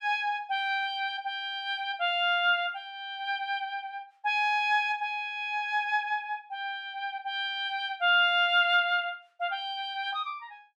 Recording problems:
none

